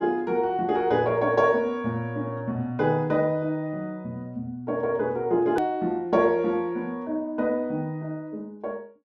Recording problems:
click at an edit; at 5.5 s

